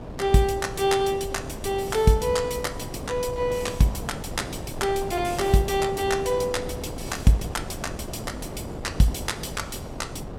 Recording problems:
wind noise; below 520 Hz, SNR 10 dB

